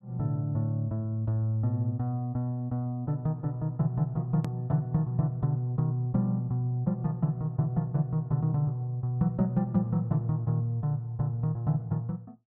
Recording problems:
edit click; at 4.5 s

